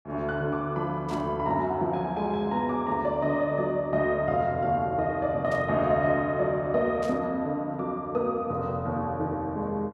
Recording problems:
burst of static; at 1 s, at 5.5 s and at 7 s; peak -13 dB vs average level

